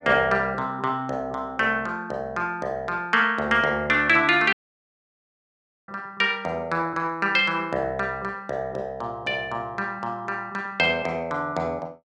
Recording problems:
dropout; at 4.5 s for 1.5 s

